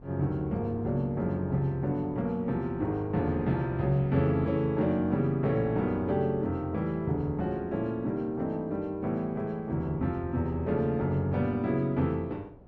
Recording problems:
wind noise; below 440 Hz, SNR 23 dB

